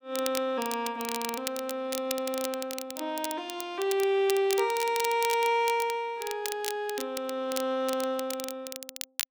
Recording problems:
crackling; vinyl, SNR 8 dB

